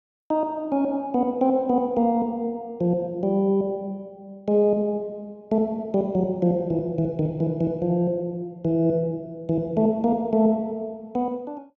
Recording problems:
none

